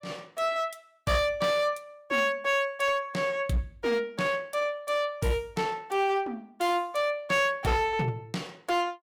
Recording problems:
distortion; hard clipping, signal-to-distortion ratio 10 dB

